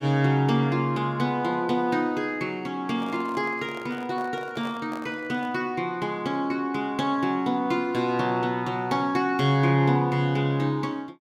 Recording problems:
handling noise; from 3 to 5.5 s; peak -10 dB vs average level

